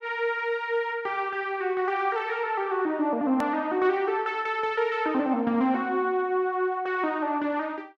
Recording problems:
hard cut with a click; at 3.5 s

